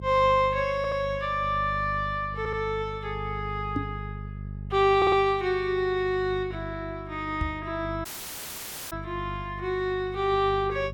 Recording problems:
hum; 50 Hz, harmonics up to 400 Hz, SNR 12 dB
stutter; at 1 s, at 2.5 s and at 5 s
knock on the microphone; at 4 s and at 7.5 s; peak +1 dB vs average level
dropout; at 8 s for 1 s

